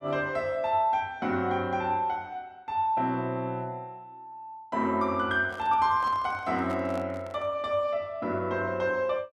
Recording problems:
microphone handling noise; from 5.5 to 7.5 s; peak -10 dB vs average level

